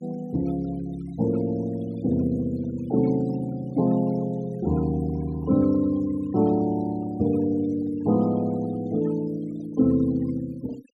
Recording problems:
noise reduction artefacts; signal-to-artefact ratio 23 dB

